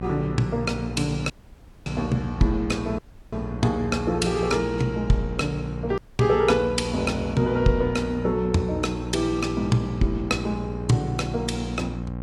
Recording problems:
codec artefacts; AAC, log-spectral distance 2 dB, nothing above 11 kHz
hum; 60 Hz, harmonics up to 1.3 kHz, SNR 8 dB
dropout; at 1.5 s for 0.5 s, at 3 s and at 6 s

